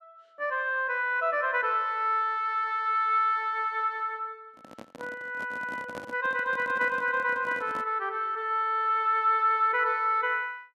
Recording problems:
handling noise; from 4.5 to 8 s; peak -9 dB vs average level

